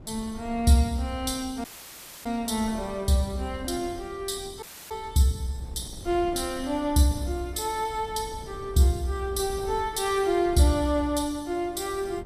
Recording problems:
wind noise; below 170 Hz, SNR 18 dB
audio cutting out; at 1.5 s for 0.5 s and at 4.5 s

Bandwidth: 14.5 kHz